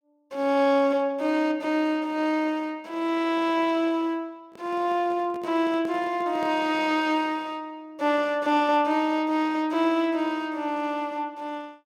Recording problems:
handling noise; from 4.5 to 7 s; peak -10 dB vs average level

